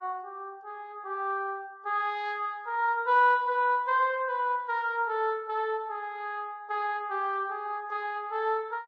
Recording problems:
lossy codec; Vorbis, log-spectral distance 2 dB

